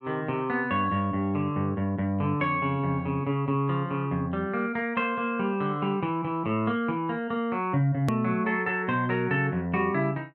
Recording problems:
hard cut with a click; at 8 s

